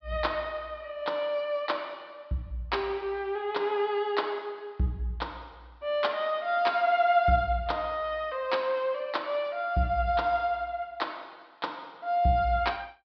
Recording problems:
low-pass filter; nothing above 5.5 kHz

